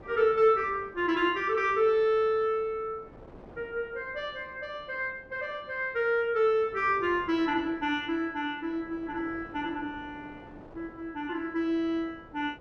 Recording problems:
wind on the microphone; below 660 Hz, SNR 22 dB

